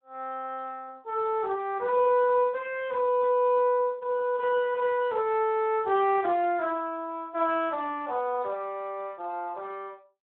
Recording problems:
phone line; 300 Hz to 3.5 kHz, Speex

